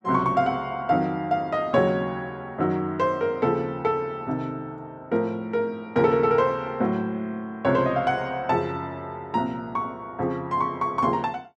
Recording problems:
none

